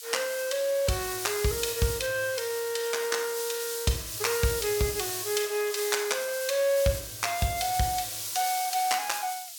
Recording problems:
hiss; SNR 5 dB

